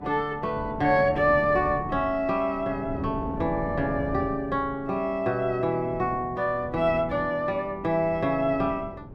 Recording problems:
wind on the microphone; below 330 Hz, SNR 13 dB

